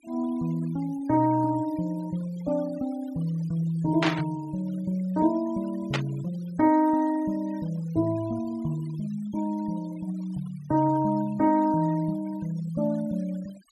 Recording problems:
denoising artefacts; signal-to-artefact ratio 22 dB
burst of static; at 4 s and at 6 s; peak +4 dB vs average level

